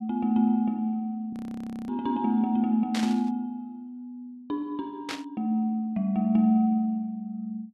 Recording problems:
audio freezing; at 1.5 s for 0.5 s
static burst; at 3 s and at 5 s; peak -3 dB vs average level

